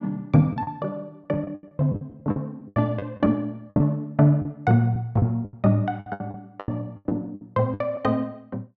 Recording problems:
lost packets; 14% of the sound replaced, filled with the last packet

